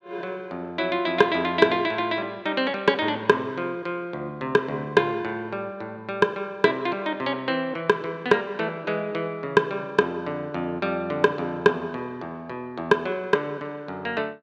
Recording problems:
none

